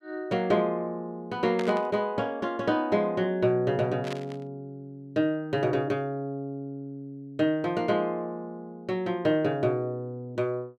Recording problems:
burst of static; at 1.5 s and at 4 s; peak -4 dB vs average level

